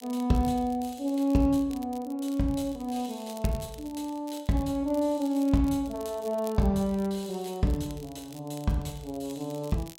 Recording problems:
crackle; vinyl, SNR 22 dB

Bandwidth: 16 kHz